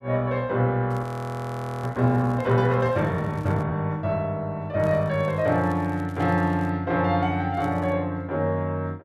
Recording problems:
crackling; from 1 to 3.5 s, from 5 to 6.5 s and at 7.5 s; loose cable, SNR 29 dB
audio freezing; at 1 s for 1 s

